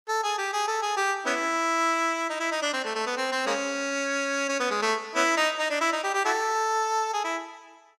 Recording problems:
none

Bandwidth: 15.5 kHz